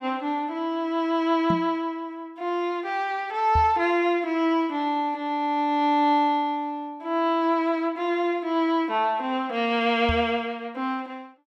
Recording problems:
microphone thump; at 1.5 s, at 3.5 s and at 10 s; peak +1 dB vs average level

